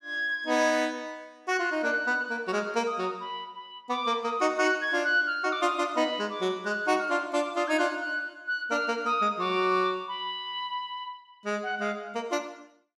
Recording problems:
none

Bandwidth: 13.5 kHz